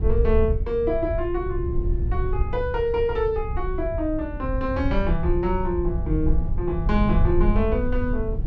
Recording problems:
wind on the microphone; below 78 Hz, SNR 2 dB

